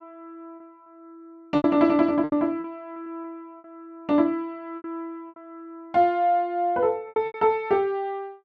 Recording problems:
packet loss; 8% of the sound replaced, filled with repeated pitch periods

